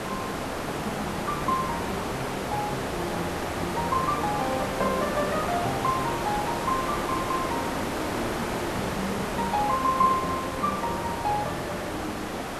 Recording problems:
background hiss; SNR 1 dB

